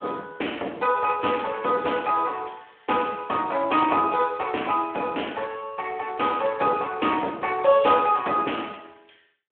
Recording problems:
phone line; 260 Hz to 3.3 kHz, Speex

